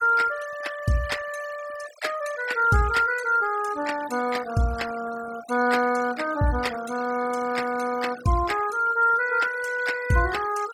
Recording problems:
denoising artefacts; signal-to-artefact ratio 15 dB

